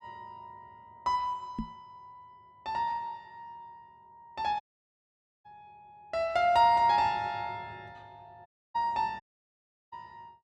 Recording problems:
microphone bump; at 1.5 s; peak -2 dB vs average level
audio cutting out; at 4.5 s for 1 s, at 8.5 s and at 9 s for 0.5 s

